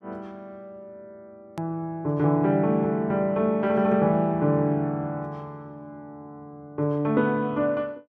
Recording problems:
hard cut with a click; at 1.5 s

